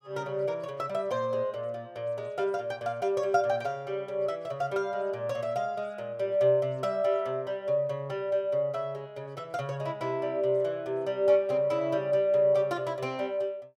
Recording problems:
none

